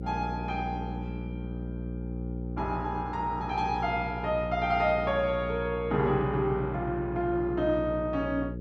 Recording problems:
electrical hum; 60 Hz, harmonics up to 540 Hz, SNR 7 dB

